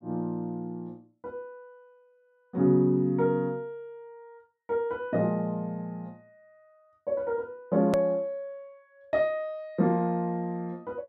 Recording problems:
hard cut with a click; at 8 s

